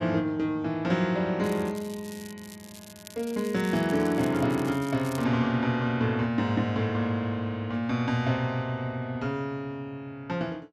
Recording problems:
crackling; from 1.5 to 5 s; loose cable, SNR 19 dB

